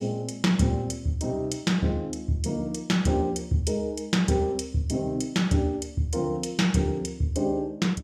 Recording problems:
none

